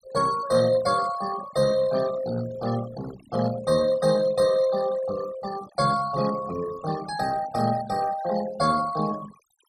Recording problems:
noise reduction artefacts; signal-to-artefact ratio 15 dB

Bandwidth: 14 kHz